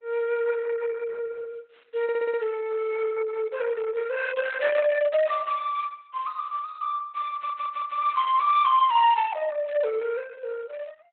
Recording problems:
codec artefacts; Opus, log-spectral distance 3 dB, nothing above 3.6 kHz
stutter; at 2 s and at 7.5 s

